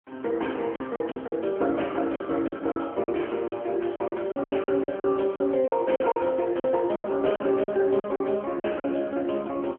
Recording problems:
phone line; 280 Hz to 3.1 kHz, AMR-NB
packet loss; 12% of the sound replaced, filled with silence

